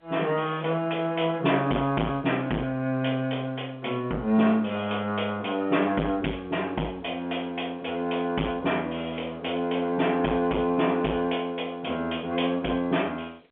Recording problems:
telephone audio; 240 Hz to 3.3 kHz, G.711
distortion; hard clipping, signal-to-distortion ratio 12 dB

